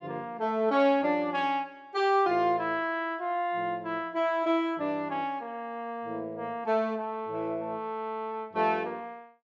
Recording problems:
none

